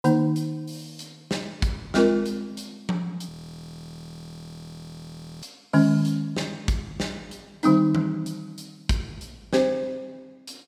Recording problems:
frozen audio; at 3.5 s for 2 s

